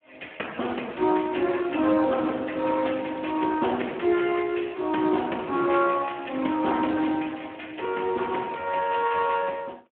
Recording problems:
telephone audio; 220 Hz to 3.1 kHz, Speex

